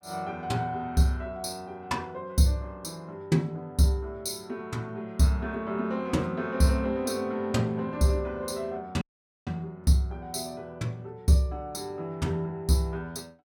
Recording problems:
dropout; at 9 s

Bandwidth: 17 kHz